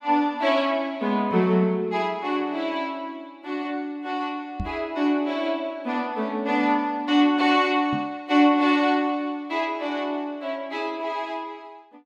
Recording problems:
microphone bump; at 4.5 s and at 8 s; peak -2 dB vs average level

